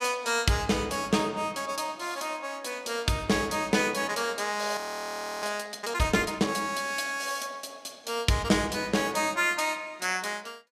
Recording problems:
audio freezing; at 5 s for 0.5 s

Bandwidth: 15 kHz